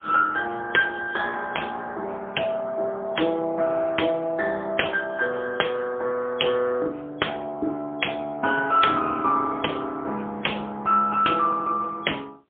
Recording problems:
telephone audio; 280 Hz to 3.3 kHz, AMR-NB, then MP3

